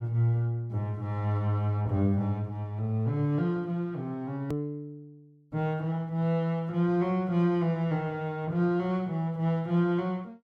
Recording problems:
hard cut with a click; at 4.5 s

